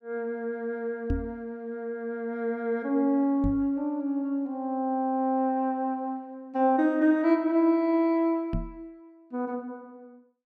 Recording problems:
microphone bump; at 1 s, at 3.5 s and at 8.5 s; peak +2 dB vs average level

